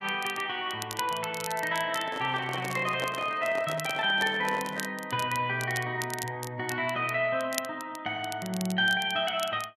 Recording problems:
crackling; vinyl, SNR 13 dB
handling noise; from 2 to 5 s; peak -2 dB vs average level

